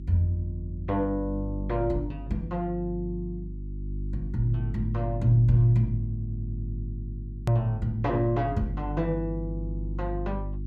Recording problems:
hum; 50 Hz, harmonics up to 350 Hz, SNR 7 dB
edit click; at 7.5 s

